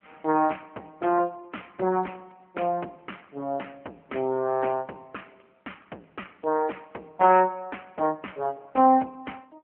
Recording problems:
telephone audio; 220 Hz to 3.2 kHz, AMR-NB

